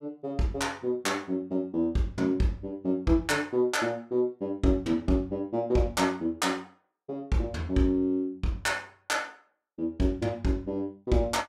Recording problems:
none

